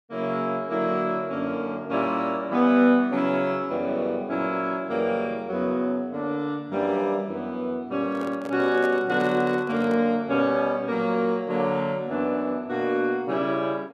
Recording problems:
microphone handling noise; from 8 to 10 s; peak -6 dB vs average level

